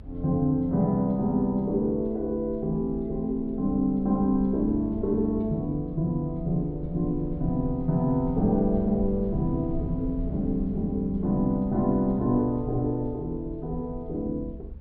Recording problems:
low-pass filter; nothing above 5.5 kHz
rumble; below 72 Hz, SNR 13 dB

